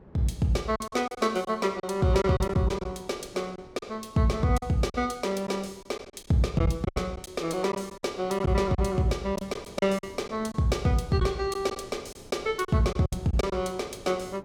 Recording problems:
wind noise; below 480 Hz, SNR 22 dB
packet loss; 8% of the sound replaced, filled with silence

